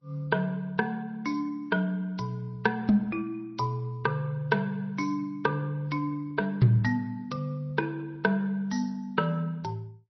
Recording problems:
lossy codec; MP3, then Vorbis, log-spectral distance 2 dB, nothing above 5.8 kHz

